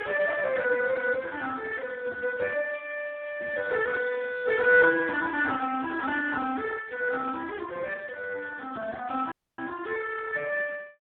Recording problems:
telephone audio; 190 Hz to 2.9 kHz, Speex
dropout; at 9.5 s

